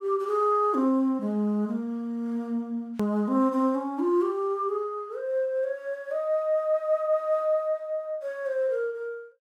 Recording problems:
hard cut with a click; at 3 s

